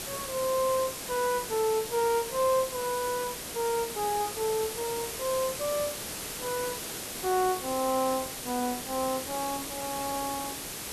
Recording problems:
background hiss; slope -2 dB per octave, SNR 5 dB

